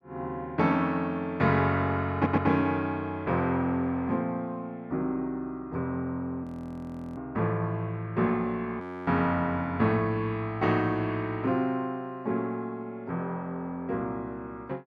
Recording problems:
stutter; at 2 s
audio freezing; at 6.5 s for 0.5 s and at 9 s

